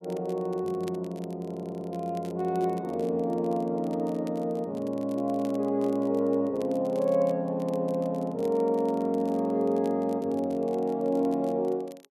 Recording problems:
crackle; vinyl, SNR 27 dB
audio stuttering; at 1.5 s

